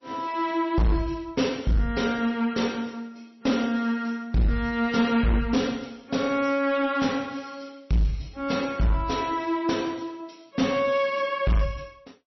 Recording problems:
codec artefacts; MP3, log-spectral distance 3 dB, nothing above 5.8 kHz
distorted audio; hard clipping, uneven, signal-to-distortion ratio 11 dB

